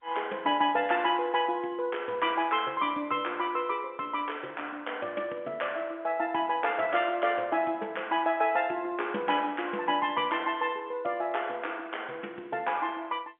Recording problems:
telephone audio; 240 Hz to 3.5 kHz, G.711

